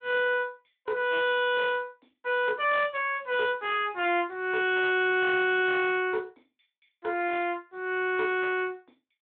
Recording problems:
telephone audio; 240 Hz to 3.7 kHz, Speex
distorted audio; hard clipping, uneven, signal-to-distortion ratio 11 dB

